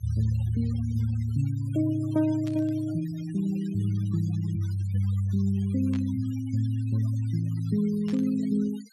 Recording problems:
noise reduction artefacts; signal-to-artefact ratio 23 dB
static burst; at 2.5 s, at 6 s and at 8 s; peak -13 dB vs average level

